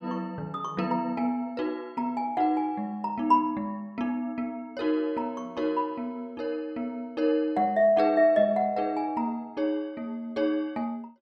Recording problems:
none

